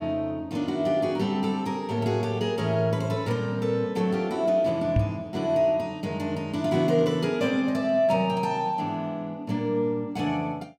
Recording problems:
microphone thump; at 5 s; peak +5 dB vs average level

